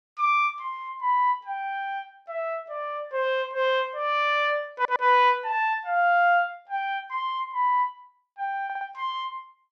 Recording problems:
audio stuttering; at 4.5 s and at 8.5 s

